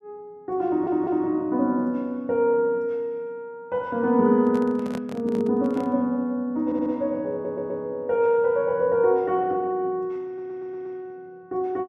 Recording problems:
audio stuttering; 4 times, first at 0.5 s
microphone handling noise; from 4.5 to 6 s; peak -5 dB vs average level

